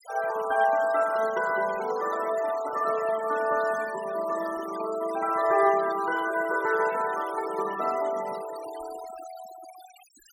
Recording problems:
denoising artefacts; signal-to-artefact ratio 17 dB

